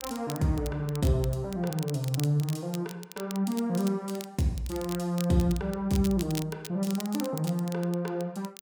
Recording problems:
crackling; vinyl, SNR 14 dB

